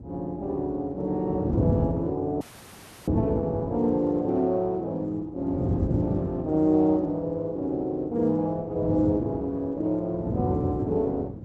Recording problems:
lossy codec; Opus, log-spectral distance 2 dB
wind noise; below 260 Hz, SNR 3 dB
audio cutting out; at 2.5 s for 0.5 s

